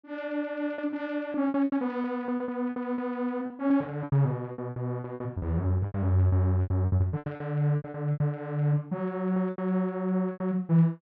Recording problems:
packet loss; 16% of the sound replaced, filled with repeated pitch periods

